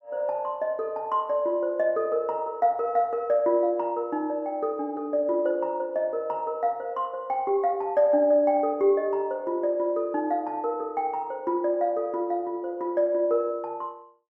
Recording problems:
none

